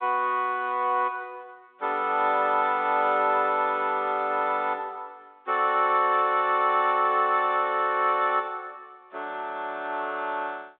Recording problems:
telephone audio; 320 Hz to 3.8 kHz, G.726

